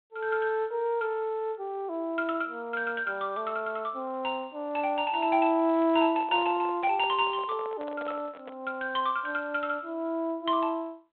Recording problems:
telephone audio; 260 Hz to 3.5 kHz, G.726
microphone handling noise; from 6 to 8.5 s; peak -10 dB vs average level

